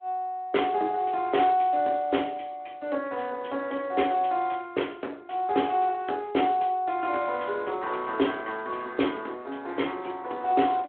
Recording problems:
phone line; 240 Hz to 3.4 kHz, Speex

